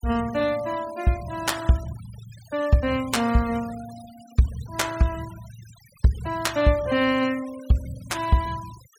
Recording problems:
noise reduction artefacts; signal-to-artefact ratio 19 dB

